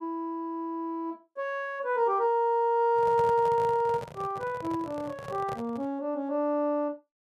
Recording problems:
microphone handling noise; from 3 to 6 s; peak -6 dB vs average level

